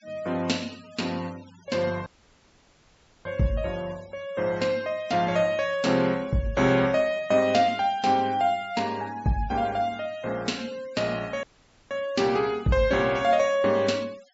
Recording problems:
treble cut off; nothing above 8 kHz
denoising artefacts; signal-to-artefact ratio 23 dB
dropout; at 2 s for 1 s and at 11 s

